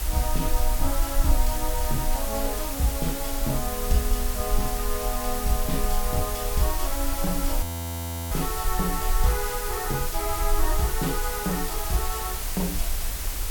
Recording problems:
hiss; slope -1 dB per octave, SNR 1 dB
low-frequency rumble; below 46 Hz, strongest tone 24 Hz, SNR 2 dB
frozen audio; at 7.5 s for 0.5 s

